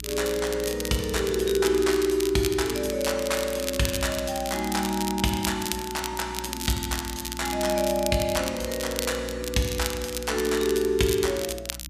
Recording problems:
hum; 60 Hz, harmonics up to 300 Hz, SNR 16 dB
crackle; vinyl, SNR 8 dB

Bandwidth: 14.5 kHz